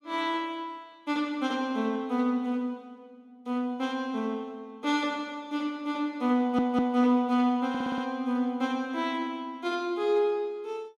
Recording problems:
stutter; at 6.5 s and at 7.5 s

